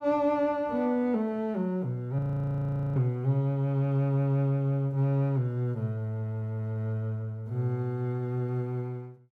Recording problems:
frozen audio; at 2 s for 1 s

